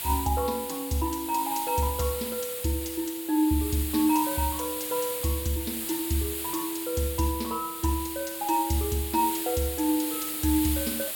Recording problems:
background hiss; SNR 4 dB

